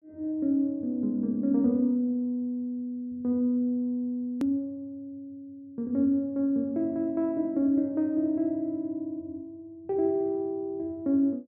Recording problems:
edit click; at 4.5 s

